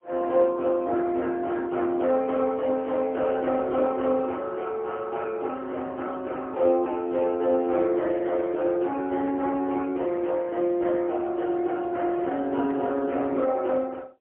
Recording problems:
phone line; 220 Hz to 3.3 kHz, AMR-NB, then MP3

